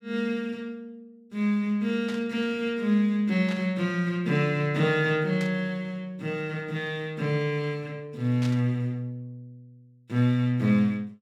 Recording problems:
burst of static; 4 times, first at 2 s; peak -8 dB vs average level

